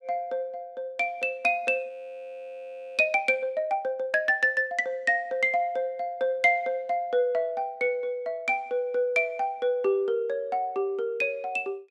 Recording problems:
audio freezing; at 2 s for 1 s

